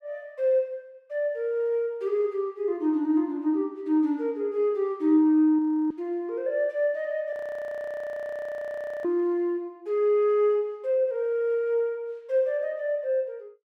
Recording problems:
frozen audio; at 5.5 s and at 7.5 s for 1.5 s

